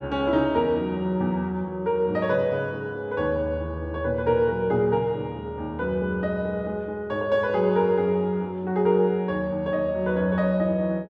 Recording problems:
none

